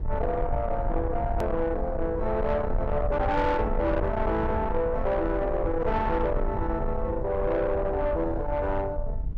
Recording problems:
distortion; soft clipping, signal-to-distortion ratio 10 dB
low-frequency rumble; below 100 Hz, SNR 5 dB
edit click; at 1.5 s

